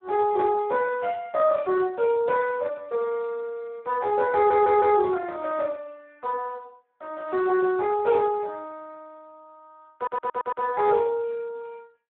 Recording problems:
phone line; 320 Hz to 2.8 kHz, Speex
stutter; at 4.5 s and at 10 s

